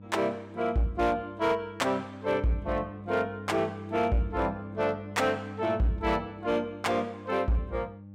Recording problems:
distortion; hard clipping, signal-to-distortion ratio 11 dB
electrical hum; 50 Hz, harmonics up to 600 Hz, SNR 14 dB

